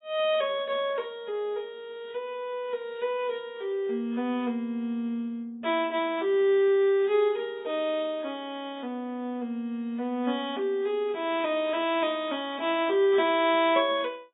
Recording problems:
lossy compression; AAC, log-spectral distance 2 dB, nothing above 3.1 kHz

